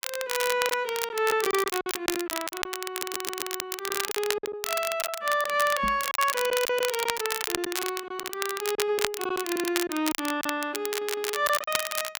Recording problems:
crackling; vinyl, SNR 3 dB
lost packets; 10% of the sound replaced, filled with silence
stutter; at 3 s, at 9.5 s and at 11 s
knock on the microphone; at 6 s; peak -3 dB vs average level

